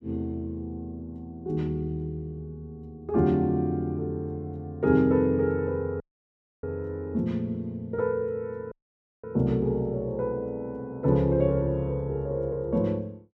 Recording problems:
dropout; at 6 s for 0.5 s and at 8.5 s for 0.5 s

